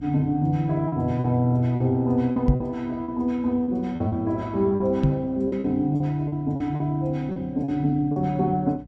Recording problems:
mains hum; 60 Hz, harmonics up to 540 Hz, SNR 21 dB
lost packets; 9% of the sound replaced, filled with repeated pitch periods
microphone thump; at 2.5 s and at 5 s; peak +8 dB vs average level

